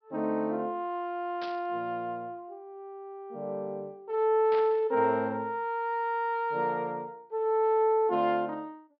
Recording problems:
treble missing; nothing above 5.5 kHz
burst of static; at 1.5 s and at 4.5 s; peak -9 dB vs average level

